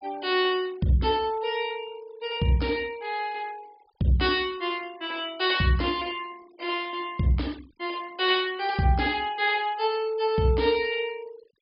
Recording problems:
treble cut off; nothing above 5.5 kHz
noise reduction artefacts; signal-to-artefact ratio 24 dB

